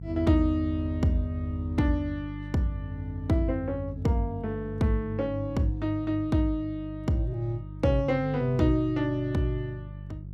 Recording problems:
hum; 50 Hz, harmonics up to 350 Hz, SNR 11 dB

